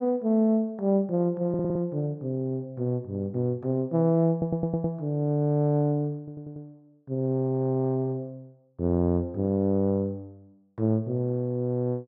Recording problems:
stutter; at 1.5 s, at 4.5 s and at 6 s

